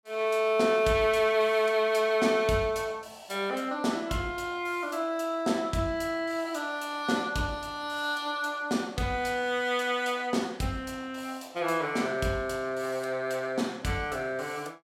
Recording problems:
none

